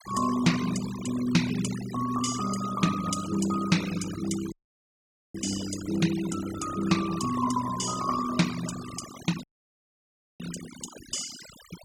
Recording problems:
noise reduction artefacts; signal-to-artefact ratio 11 dB
audio cutting out; at 4.5 s for 1 s and at 9.5 s for 1 s

